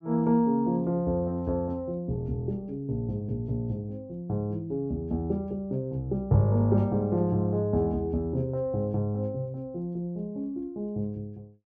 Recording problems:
none

